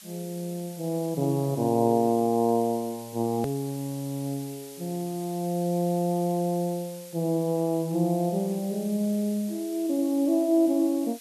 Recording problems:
hiss; slope +4 dB per octave, SNR 18 dB
click at an edit; at 3.5 s

